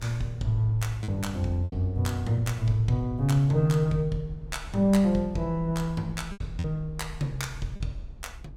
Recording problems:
rumble; below 62 Hz, strongest tone 36 Hz, SNR 15 dB
lost packets; 3% of the sound replaced, filled with repeated pitch periods

